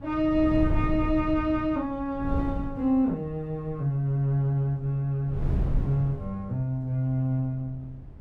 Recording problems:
wind on the microphone; below 120 Hz, SNR 6 dB

